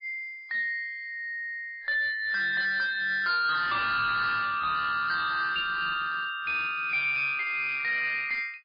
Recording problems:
codec artefacts; MP3, log-spectral distance 3 dB, nothing above 4.4 kHz
distortion; hard clipping, uneven, signal-to-distortion ratio 9 dB

